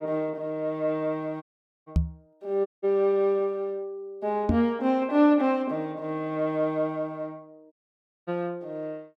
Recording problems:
dropout; at 1.5 s, at 2.5 s and at 7.5 s for 0.5 s
knock on the microphone; at 2 s and at 4.5 s; peak +7 dB vs average level

